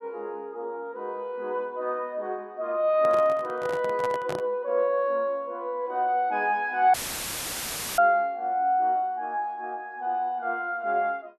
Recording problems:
packet loss; 0.7% of the sound replaced, filled with repeated pitch periods
microphone handling noise; from 3 to 4.5 s; peak -4 dB vs average level
audio cutting out; at 7 s for 1 s; filled with static

